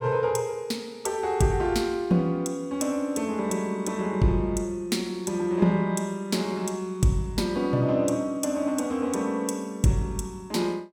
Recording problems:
none

